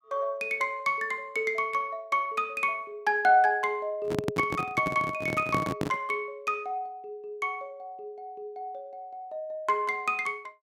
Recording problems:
handling noise; from 4 to 6 s; peak +2 dB vs average level

